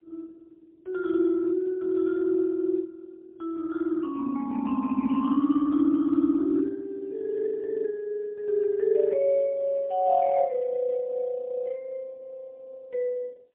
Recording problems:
phone line; 240 Hz to 3.3 kHz, AMR-NB, then MP3

